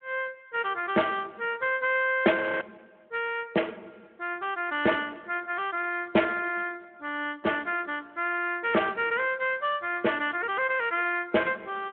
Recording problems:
telephone audio; 240 Hz to 3.3 kHz, Speex
audio freezing; at 2.5 s

